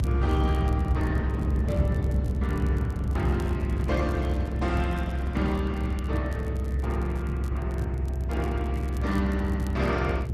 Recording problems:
codec artefacts; Opus, then Opus, log-spectral distance 2 dB, nothing above 11.6 kHz
low-frequency rumble; below 120 Hz, strongest tone 66 Hz, SNR -4 dB
crackling; vinyl, SNR 23 dB
microphone handling noise; from 3 to 5.5 s; peak -10 dB vs average level

